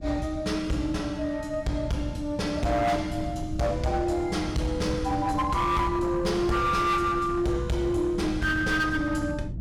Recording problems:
distorted audio; hard clipping, signal-to-distortion ratio 11 dB
wind noise; below 180 Hz, SNR 11 dB

